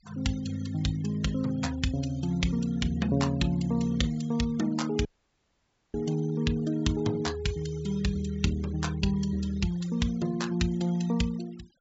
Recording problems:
treble cut off; nothing above 8 kHz
noise reduction artefacts; signal-to-artefact ratio 21 dB
audio cutting out; at 5 s for 1 s

